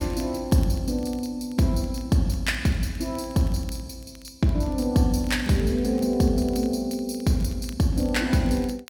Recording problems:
crackling; vinyl, SNR 27 dB

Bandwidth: 17.5 kHz